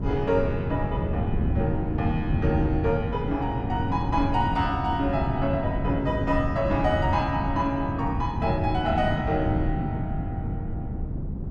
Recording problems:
wind noise; below 190 Hz, SNR 2 dB

